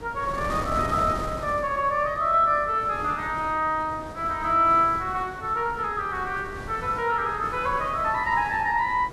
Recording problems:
wind noise; below 790 Hz, SNR 13 dB

